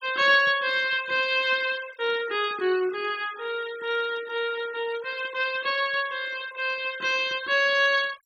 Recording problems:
denoising artefacts; signal-to-artefact ratio 19 dB

